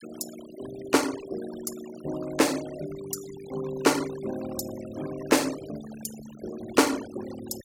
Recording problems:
noise reduction artefacts; signal-to-artefact ratio 14 dB

